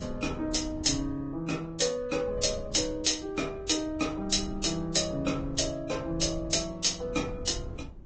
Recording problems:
low-pass filter; nothing above 8 kHz
lossy codec; Vorbis, log-spectral distance 4 dB
wind on the microphone; below 140 Hz, SNR 14 dB

